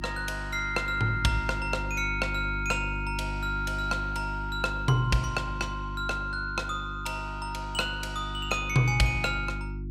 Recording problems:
hum; 50 Hz, harmonics up to 350 Hz, SNR 7 dB

